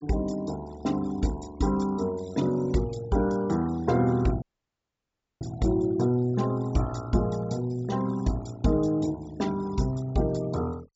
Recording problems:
treble missing; nothing above 8 kHz
denoising artefacts; signal-to-artefact ratio 20 dB
audio cutting out; at 4.5 s for 1 s

